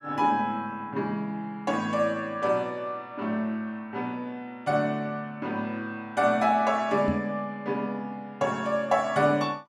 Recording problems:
microphone thump; at 7 s; peak +1 dB vs average level

